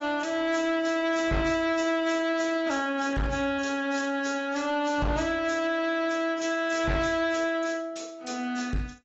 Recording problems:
lossy codec; AAC, log-spectral distance 4 dB, nothing above 7.6 kHz
distortion; soft clipping, signal-to-distortion ratio 11 dB

